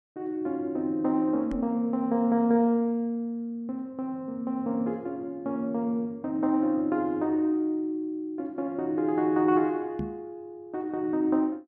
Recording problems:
knock on the microphone; at 1.5 s and at 10 s; peak -1 dB vs average level

